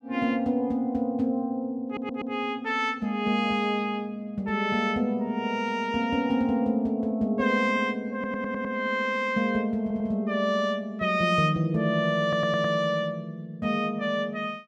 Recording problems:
stutter; 4 times, first at 2 s

